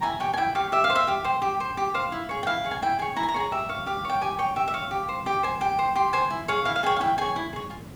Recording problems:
background hiss; slope -6 dB per octave, SNR 17 dB

